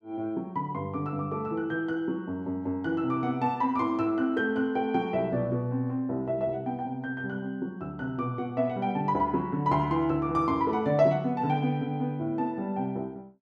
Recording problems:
none

